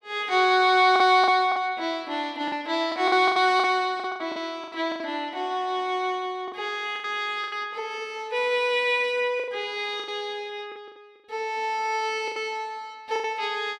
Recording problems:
lost packets; 10% of the sound replaced, filled with the last packet

